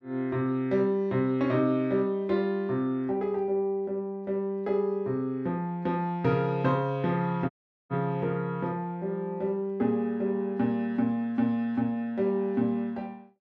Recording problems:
audio cutting out; at 7.5 s

